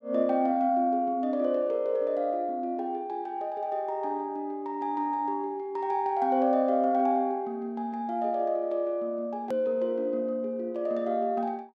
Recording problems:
hard cut with a click; at 9.5 s

